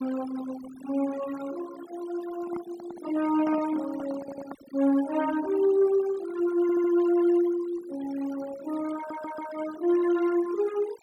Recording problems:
denoising artefacts; signal-to-artefact ratio 17 dB
handling noise; from 2.5 to 4.5 s; peak -7 dB vs average level
audio stuttering; at 4 s, at 6.5 s and at 9 s

